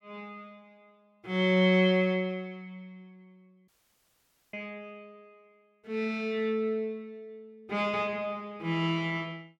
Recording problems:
audio cutting out; at 3.5 s for 1 s

